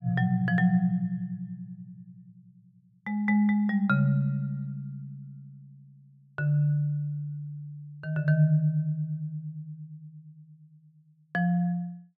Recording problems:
none

